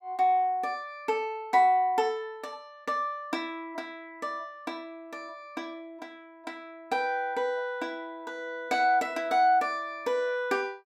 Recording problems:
none

